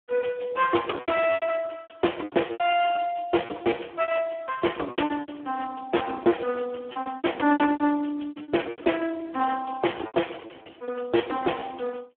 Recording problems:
phone line; 260 Hz to 3.3 kHz, Speex
lost packets; 16% of the sound replaced, filled with repeated pitch periods

